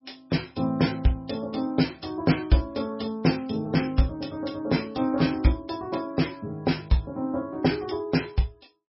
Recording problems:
lossy codec; MP3, log-spectral distance 4 dB, nothing above 5.5 kHz

